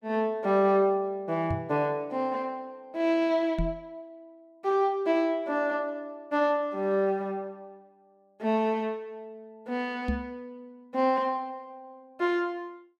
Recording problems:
microphone bump; at 1.5 s, at 3.5 s and at 10 s; peak +2 dB vs average level

